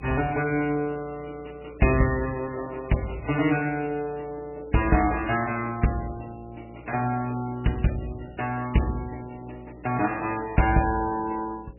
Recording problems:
lossy compression; MP3, log-spectral distance 8 dB, nothing above 2.5 kHz
hum; 60 Hz, harmonics up to 540 Hz, SNR 23 dB

